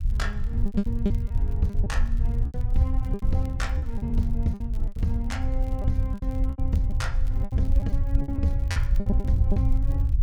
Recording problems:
low-frequency rumble; below 72 Hz, SNR -4 dB
crackling; vinyl, SNR 27 dB
packet loss; 13% of the sound replaced, filled with repeated pitch periods

